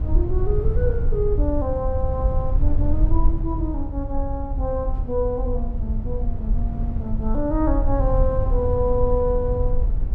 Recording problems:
low-frequency rumble; below 68 Hz, SNR -1 dB

